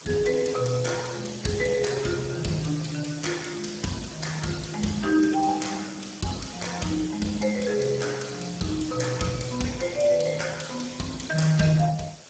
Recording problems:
lossy codec; Speex, log-spectral distance 10 dB, nothing above 7.8 kHz
hiss; SNR 16 dB

